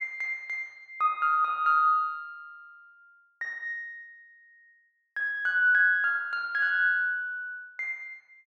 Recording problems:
none

